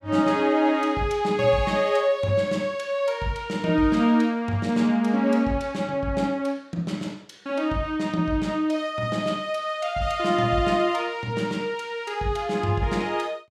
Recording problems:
none

